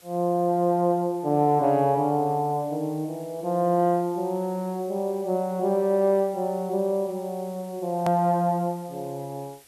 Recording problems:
hiss; SNR 26 dB
edit click; at 8 s

